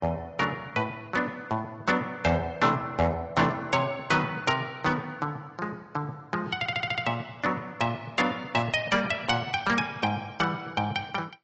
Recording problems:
codec artefacts; AAC, log-spectral distance 3 dB, nothing above 7.8 kHz
distortion; hard clipping, signal-to-distortion ratio 11 dB
audio stuttering; at 6.5 s

